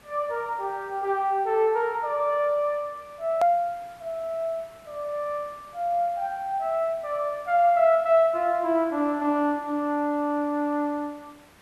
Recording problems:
hiss; SNR 27 dB
hard cut with a click; at 3.5 s

